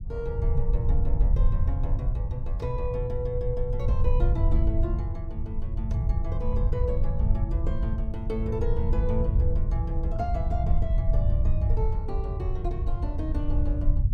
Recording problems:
low-frequency rumble; below 80 Hz, SNR -7 dB

